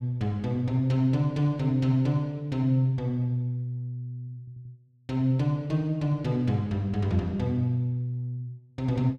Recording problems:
audio stuttering; at 4.5 s

